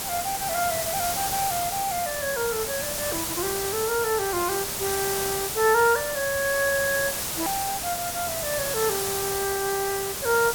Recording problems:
background hiss; slope -1 dB per octave, SNR 1 dB
hard cut with a click; at 7.5 s

